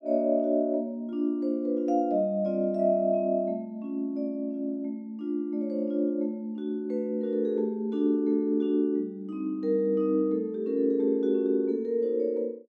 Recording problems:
none

